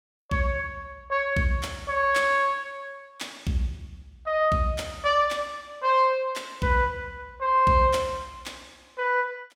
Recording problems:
none

